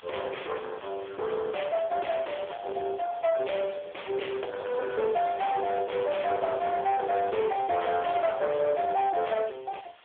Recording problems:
telephone audio; 340 Hz to 3.4 kHz, AMR-NB
distorted audio; soft clipping, signal-to-distortion ratio 8 dB
background hiss; SNR 23 dB

